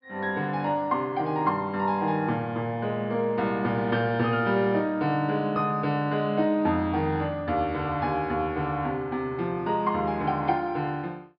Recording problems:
treble cut off; nothing above 5.2 kHz

